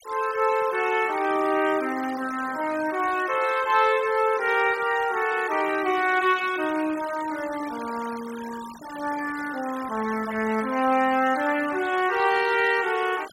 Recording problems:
noise reduction artefacts; signal-to-artefact ratio 16 dB

